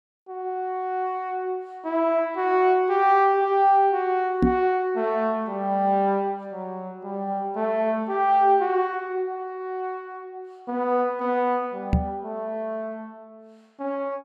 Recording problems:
microphone thump; at 4.5 s and at 12 s; peak +7 dB vs average level

